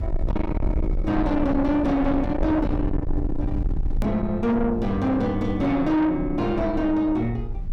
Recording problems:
distorted audio; soft clipping, signal-to-distortion ratio 7 dB
low-frequency rumble; below 140 Hz, SNR 6 dB
edit click; at 4 s

